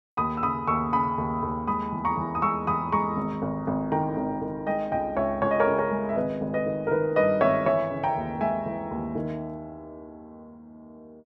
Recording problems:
none

